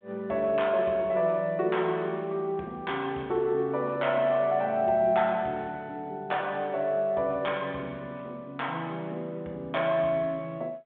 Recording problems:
telephone audio; 190 Hz to 3.6 kHz, G.726

